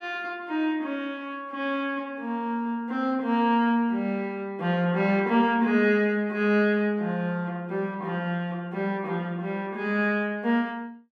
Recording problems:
none

